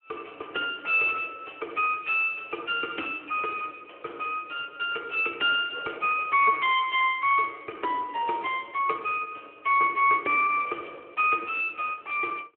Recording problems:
phone line; 260 Hz to 3.3 kHz, Speex

